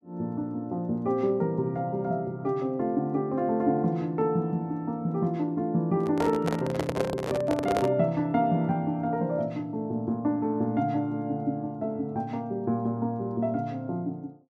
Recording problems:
microphone handling noise; from 6 to 8 s; peak +4 dB vs average level

